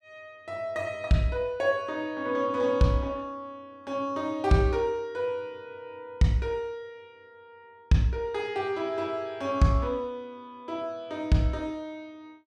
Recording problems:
none

